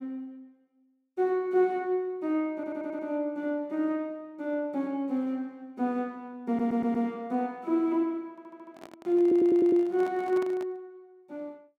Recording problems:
audio stuttering; 4 times, first at 2.5 s
handling noise; from 8.5 to 11 s; peak -9 dB vs average level

